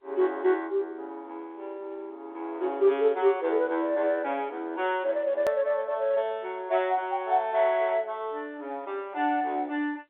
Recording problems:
telephone audio; 280 Hz to 3.7 kHz, G.711
edit click; at 5.5 s

